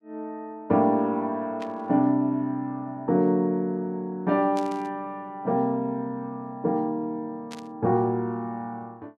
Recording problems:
burst of static; at 1.5 s, at 4.5 s and at 7.5 s; peak -10 dB vs average level

